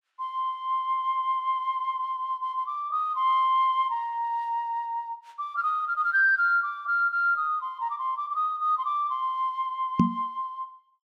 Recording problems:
microphone bump; at 10 s; peak +9 dB vs average level

